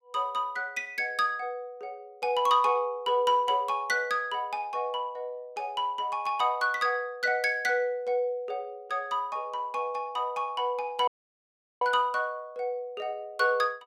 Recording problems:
audio cutting out; at 11 s for 0.5 s

